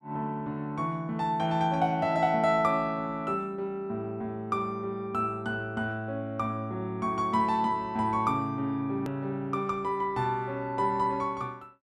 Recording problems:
hard cut with a click; at 9 s

